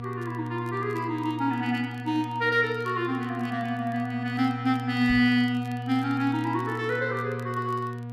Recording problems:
hum; 60 Hz, harmonics up to 960 Hz, SNR 8 dB
crackle; vinyl, SNR 30 dB
microphone thump; at 5 s; peak -3 dB vs average level

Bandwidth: 14.5 kHz